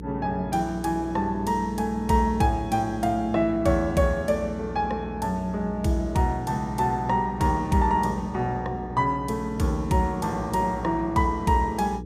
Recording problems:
hum; 60 Hz, harmonics up to 480 Hz, SNR 12 dB

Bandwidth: 15.5 kHz